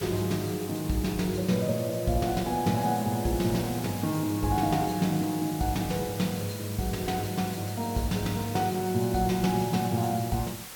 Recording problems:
hiss; slope -1 dB per octave, SNR 12 dB

